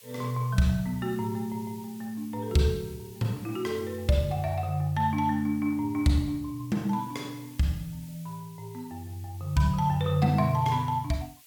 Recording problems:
hiss; SNR 23 dB

